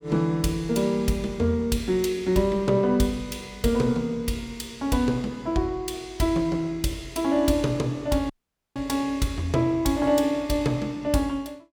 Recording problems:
audio cutting out; at 8.5 s

